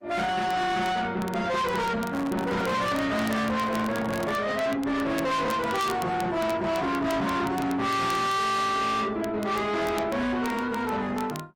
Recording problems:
lossy codec; Opus, log-spectral distance 2 dB, nothing above 16.6 kHz
distorted audio; soft clipping, signal-to-distortion ratio 7 dB
crackle; vinyl, SNR 20 dB
microphone handling noise; from 2 to 4.5 s; peak -4 dB vs average level

